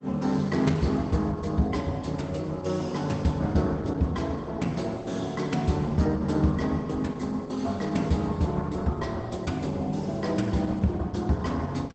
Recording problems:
lossy codec; Opus, log-spectral distance 3 dB, nothing above 8 kHz

